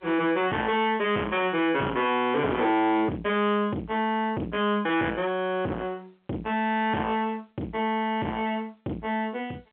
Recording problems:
telephone audio; 150 Hz to 3.4 kHz, G.711
distorted audio; soft clipping, signal-to-distortion ratio 7 dB

